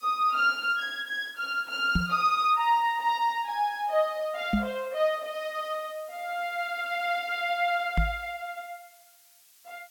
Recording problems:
hiss; slope +4 dB per octave, SNR 26 dB
microphone bump; at 2 s, at 4.5 s and at 8 s; peak +5 dB vs average level

